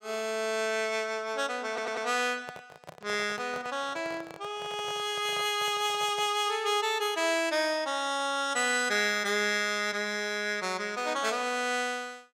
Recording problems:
stutter; at 1.5 s
microphone handling noise; from 2.5 to 6.5 s; peak -10 dB vs average level

